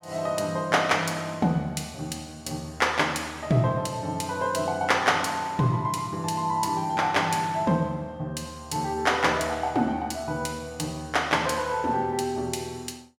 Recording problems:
none

